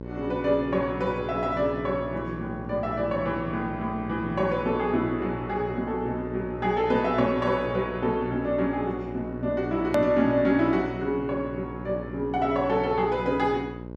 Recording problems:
electrical hum; 60 Hz, harmonics up to 1.1 kHz, SNR 10 dB
hard cut with a click; at 10 s

